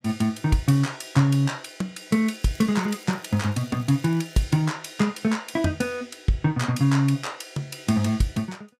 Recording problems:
crackle; from 2.5 to 4.5 s; loose cable, SNR 27 dB

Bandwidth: 15.5 kHz